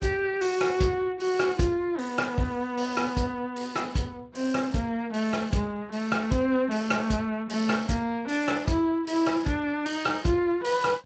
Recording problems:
lossy compression; Speex, log-spectral distance 4 dB, nothing above 7.8 kHz

